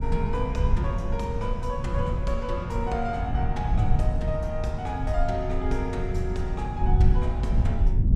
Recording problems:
low-frequency rumble; below 94 Hz, SNR -3 dB

